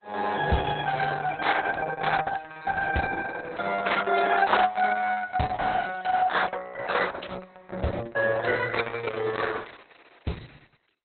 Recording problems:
lossy codec; AAC, then Opus, log-spectral distance 6 dB, nothing above 4 kHz

